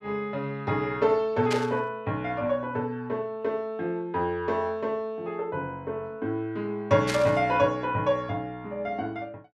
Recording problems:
burst of static; at 1.5 s and at 7 s; peak +1 dB vs average level

